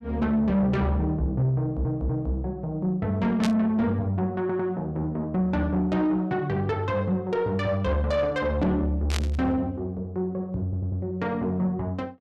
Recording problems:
distorted audio; soft clipping, signal-to-distortion ratio 11 dB
audio stuttering; at 1.5 s, at 4.5 s and at 11 s
burst of static; at 3.5 s and at 9 s; peak 0 dB vs average level

